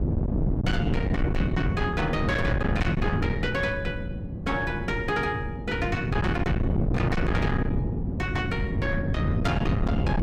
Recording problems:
distortion; soft clipping, signal-to-distortion ratio 7 dB
wind on the microphone; below 240 Hz, SNR -1 dB

